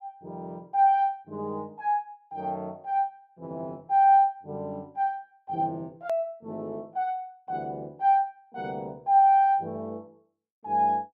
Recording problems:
edit click; at 6 s

